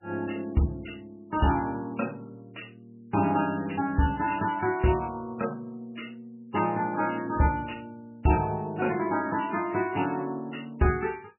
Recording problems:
lossy compression; MP3, log-spectral distance 4 dB, nothing above 2.9 kHz

